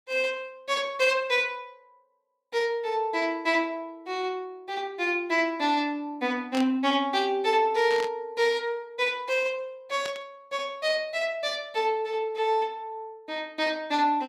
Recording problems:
burst of static; at 6.5 s, at 8 s and at 10 s; peak -5 dB vs average level

